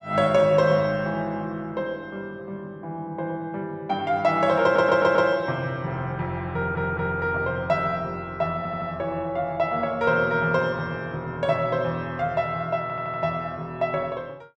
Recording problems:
audio stuttering; 4 times, first at 4.5 s

